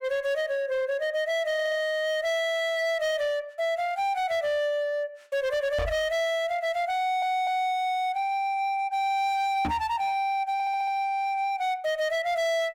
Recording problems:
distorted audio; hard clipping, signal-to-distortion ratio 10 dB
stutter; at 1.5 s, at 7 s and at 11 s
microphone thump; at 6 s and at 9.5 s; peak +1 dB vs average level

